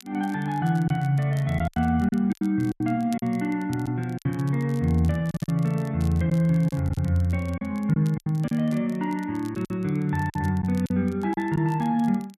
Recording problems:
crackling; vinyl, SNR 26 dB
packet loss; 8% of the sound replaced, filled with silence

